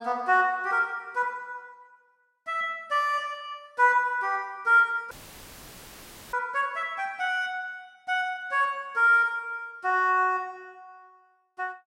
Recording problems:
dropout; at 5 s for 1 s; filled with static

